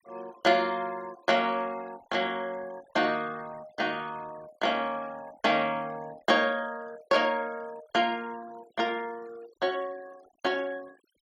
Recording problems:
denoising artefacts; signal-to-artefact ratio 23 dB

